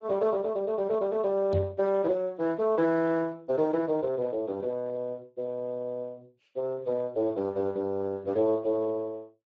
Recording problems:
lossy codec; Speex, log-spectral distance 2 dB
microphone thump; at 1.5 s; peak +5 dB vs average level

